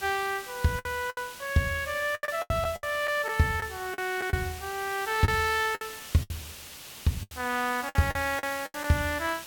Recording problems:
hiss; slope 0 dB per octave, SNR 12 dB
lost packets; 11% of the sound replaced, filled with the last packet

